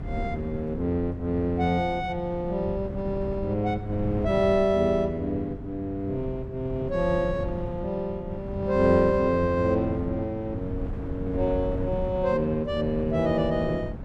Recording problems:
wind on the microphone; below 210 Hz, SNR 9 dB

